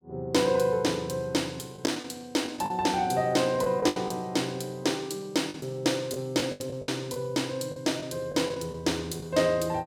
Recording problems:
lost packets; 8% of the sound replaced, filled with the last packet

